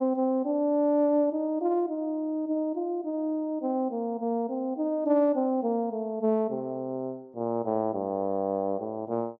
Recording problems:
none

